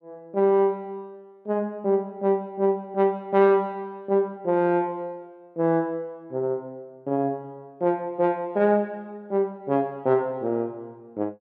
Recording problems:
none

